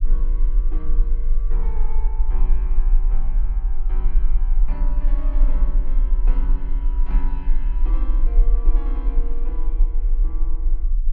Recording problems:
low-frequency rumble; below 36 Hz, strongest tone 22 Hz, SNR -17 dB

